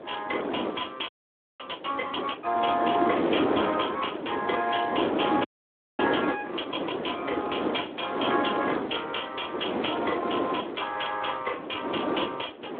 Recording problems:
phone line; 240 Hz to 3.5 kHz, Speex
wind noise; below 730 Hz, SNR 1 dB
frozen audio; at 1 s for 0.5 s and at 5.5 s for 0.5 s

